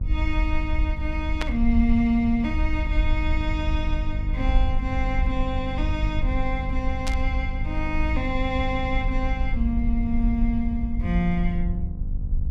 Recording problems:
hum; 50 Hz, harmonics up to 800 Hz, SNR 9 dB
rumble; below 62 Hz, SNR 0 dB
burst of static; at 1.5 s and at 7 s; peak +2 dB vs average level

